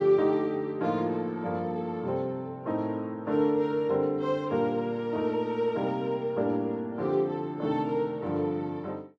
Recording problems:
none

